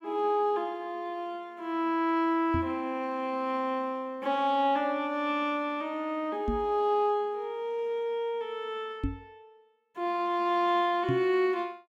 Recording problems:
microphone bump; 4 times, first at 2.5 s; peak +2 dB vs average level

